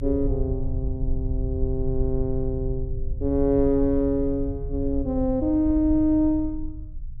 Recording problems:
low-frequency rumble; below 72 Hz, SNR 7 dB

